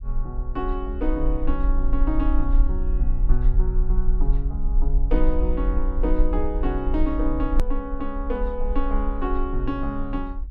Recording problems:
low-frequency rumble; below 42 Hz, strongest tone 22 Hz, SNR -2 dB
hard cut with a click; at 7.5 s

